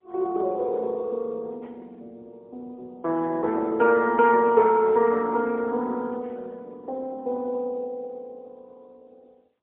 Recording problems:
telephone audio; 300 Hz to 2.8 kHz, AMR-NB, then MP3

